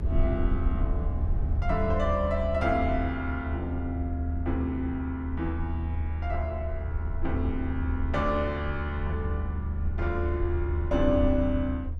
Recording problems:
rumble; below 78 Hz, SNR 0 dB

